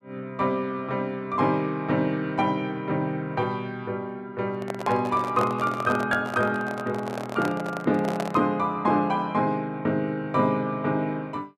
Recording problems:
handling noise; from 4.5 to 8.5 s; peak 0 dB vs average level

